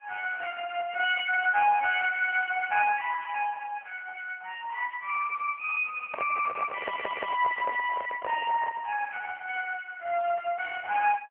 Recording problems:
phone line; 560 Hz to 2.9 kHz, AMR-NB
microphone handling noise; from 6 to 9 s; peak -2 dB vs average level
stutter; at 7 s

